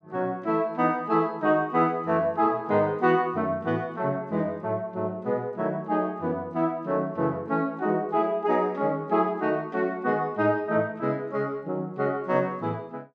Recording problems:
none

